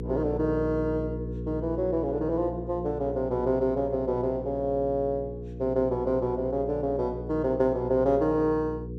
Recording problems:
hum; 60 Hz, harmonics up to 480 Hz, SNR 9 dB

